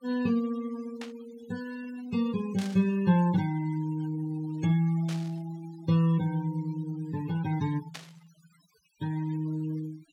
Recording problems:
noise reduction artefacts; signal-to-artefact ratio 18 dB
static burst; 4 times, first at 1 s; peak -7 dB vs average level

